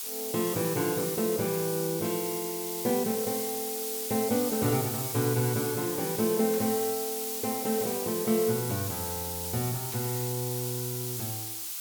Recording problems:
hiss; slope +4 dB per octave, SNR 2 dB
static burst; at 2 s, at 6.5 s and at 10 s; peak -11 dB vs average level

